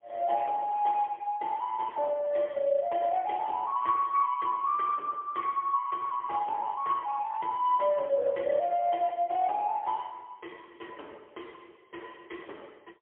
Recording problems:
telephone audio; 370 Hz to 3.2 kHz, AMR-NB, then MP3

